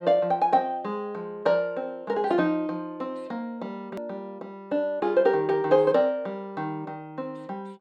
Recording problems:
hard cut with a click; at 4 s

